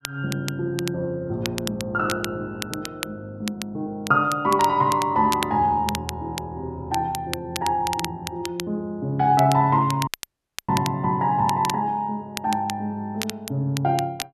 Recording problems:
crackle; vinyl, SNR 11 dB
dropout; at 10 s for 0.5 s

